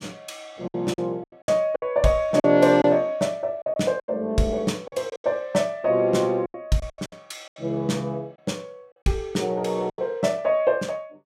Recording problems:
packet loss; 10% of the sound replaced, filled with silence

